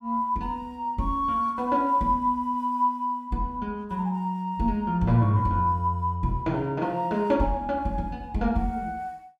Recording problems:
none

